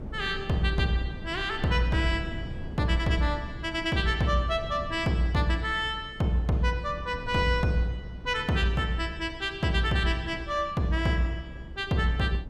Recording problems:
wind on the microphone; below 190 Hz, SNR 14 dB

